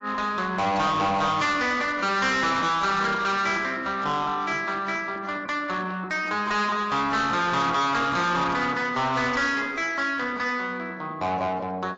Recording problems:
lossy codec; AAC, log-spectral distance 3 dB, nothing above 7.3 kHz
distortion; soft clipping, signal-to-distortion ratio 7 dB

